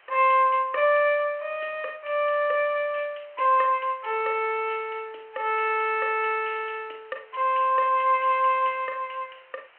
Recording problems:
phone line; 340 Hz to 3.2 kHz, G.726
hiss; SNR 30 dB

